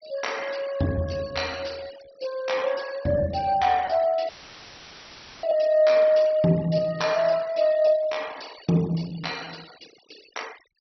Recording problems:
low-pass filter; nothing above 5.9 kHz
noise reduction artefacts; signal-to-artefact ratio 21 dB
lost packets; 5% of the sound replaced, filled with repeated pitch periods
audio cutting out; at 4.5 s for 1 s; filled with static

